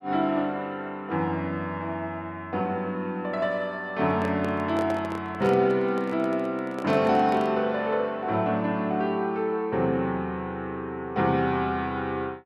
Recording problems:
handling noise; from 4 to 7.5 s; peak -4 dB vs average level

